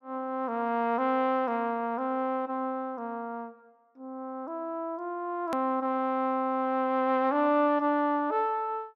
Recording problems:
edit click; at 5.5 s

